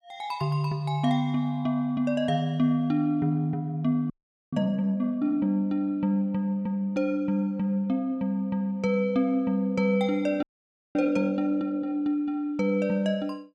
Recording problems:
frozen audio; at 4 s and at 10 s for 0.5 s

